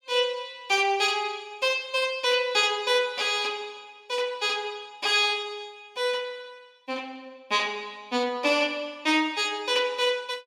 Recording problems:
none

